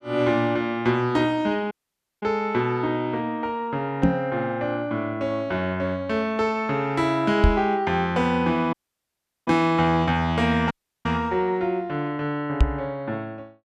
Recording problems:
dropout; at 1.5 s for 0.5 s, at 8.5 s for 0.5 s and at 11 s
microphone thump; at 4 s, at 7.5 s and at 13 s; peak +9 dB vs average level

